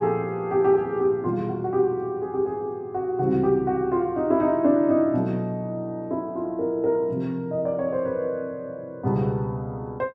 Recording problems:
none

